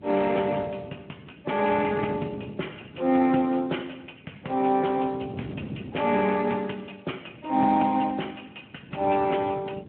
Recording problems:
telephone audio; 220 Hz to 3.3 kHz, Speex
wind noise; below 320 Hz, SNR 15 dB

